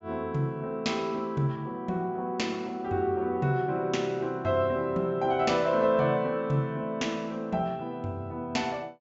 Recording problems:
low-pass filter; nothing above 7.5 kHz

